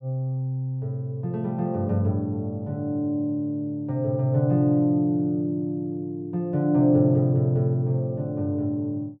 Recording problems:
none

